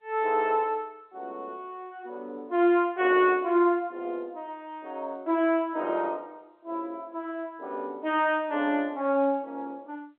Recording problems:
phone line; 220 Hz to 3.5 kHz, G.711

